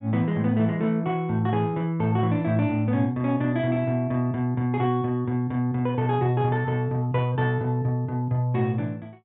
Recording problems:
low-pass filter; nothing above 4 kHz

